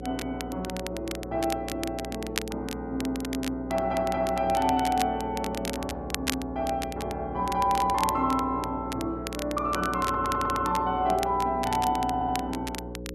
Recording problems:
hum; 60 Hz, harmonics up to 540 Hz, SNR 10 dB
crackle; vinyl, SNR 10 dB
audio stuttering; at 3.5 s, at 10 s and at 12 s

